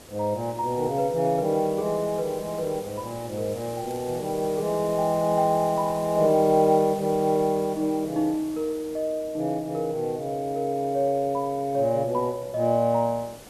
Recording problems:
hiss; SNR 18 dB
crackle; at 3.5 s; loose cable, SNR 28 dB

